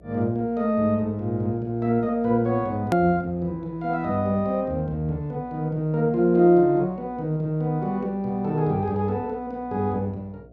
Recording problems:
hum; 60 Hz, harmonics up to 720 Hz, SNR 25 dB
hard cut with a click; at 3 s

